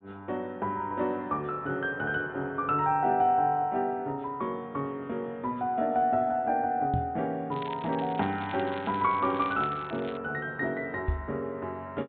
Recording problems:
low-pass filter; nothing above 4 kHz
microphone bump; at 7 s and at 11 s; peak +3 dB vs average level
crackle; from 7.5 to 10 s; loose cable, SNR 18 dB

